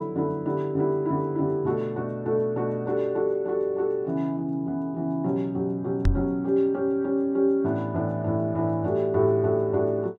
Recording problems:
microphone thump; at 6 s; peak +5 dB vs average level

